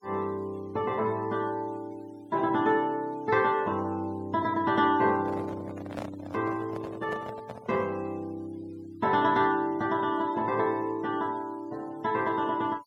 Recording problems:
denoising artefacts; signal-to-artefact ratio 25 dB
handling noise; from 5 to 8 s; peak -4 dB vs average level

